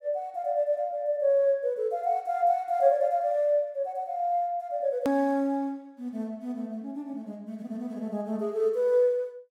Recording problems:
edit click; at 5 s

